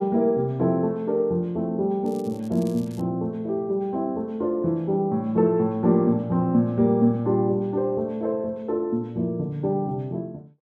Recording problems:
crackle; at 2 s; loose cable, SNR 26 dB

